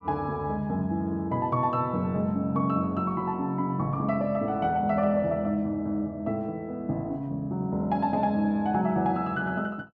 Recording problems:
none

